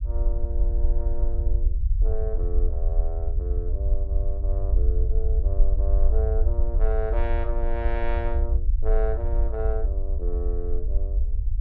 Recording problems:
rumble; below 56 Hz, SNR -8 dB

